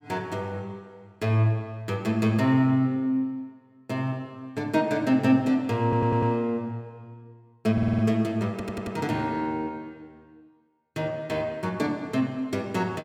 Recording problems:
audio stuttering; at 6 s, at 7.5 s and at 8.5 s

